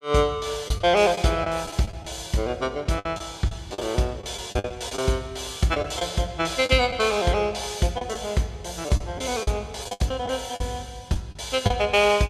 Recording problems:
packet loss; 8% of the sound replaced, filled with the last packet

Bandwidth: 14.5 kHz